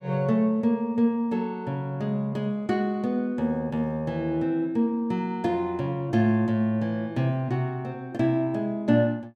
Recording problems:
none

